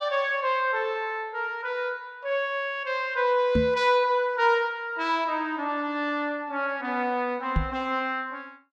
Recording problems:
microphone bump; at 3.5 s and at 7.5 s; peak +4 dB vs average level

